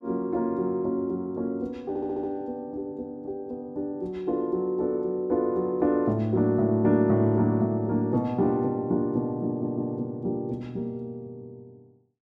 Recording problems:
audio stuttering; at 2 s and at 9.5 s

